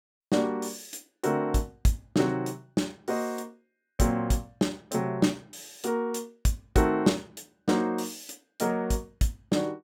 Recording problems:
none

